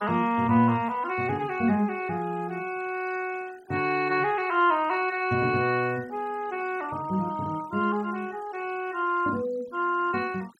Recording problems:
noise reduction artefacts; signal-to-artefact ratio 23 dB

